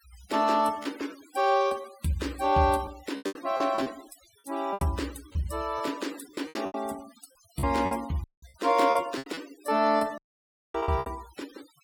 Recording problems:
noise reduction artefacts; signal-to-artefact ratio 19 dB
packet loss; 12% of the sound replaced, filled with repeated pitch periods
dropout; at 8 s and at 10 s for 0.5 s

